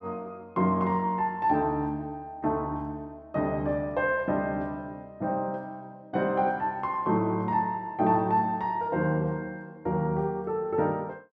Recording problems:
none

